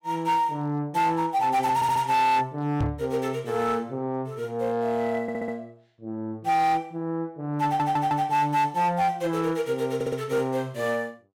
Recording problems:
distortion; hard clipping, signal-to-distortion ratio 11 dB
audio stuttering; 4 times, first at 2 s
microphone bump; at 3 s; peak +2 dB vs average level

